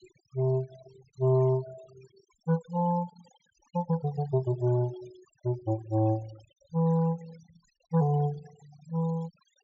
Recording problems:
treble missing; nothing above 8 kHz
noise reduction artefacts; signal-to-artefact ratio 24 dB

